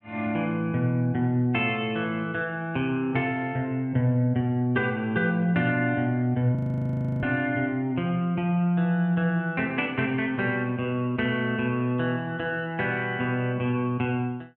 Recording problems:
frozen audio; at 6.5 s for 0.5 s

